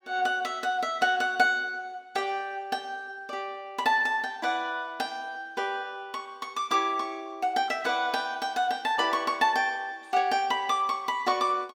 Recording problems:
none

